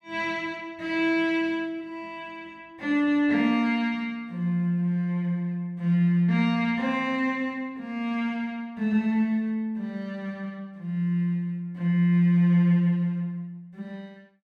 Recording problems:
none

